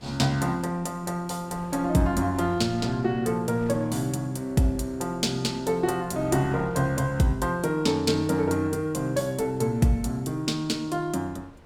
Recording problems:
wind noise; below 590 Hz, SNR 23 dB

